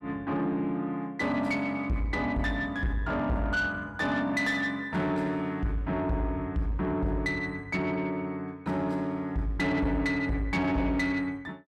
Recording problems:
distorted audio; soft clipping, signal-to-distortion ratio 12 dB

